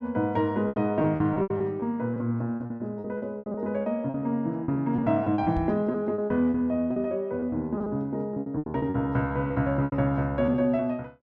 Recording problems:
lost packets; 15% of the sound replaced, filled with repeated pitch periods
microphone bump; at 5.5 s; peak 0 dB vs average level

